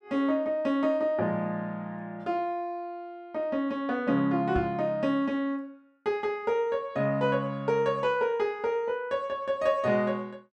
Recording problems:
microphone thump; at 4.5 s; peak -2 dB vs average level

